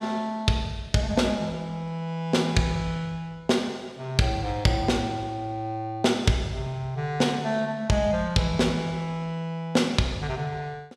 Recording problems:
none

